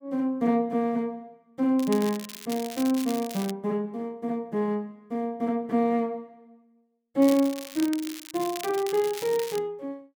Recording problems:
crackle; from 2 to 3.5 s and from 7 to 9.5 s; loose cable, SNR 12 dB

